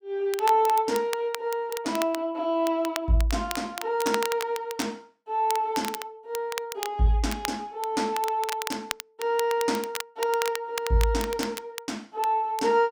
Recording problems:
crackle; vinyl, SNR 10 dB

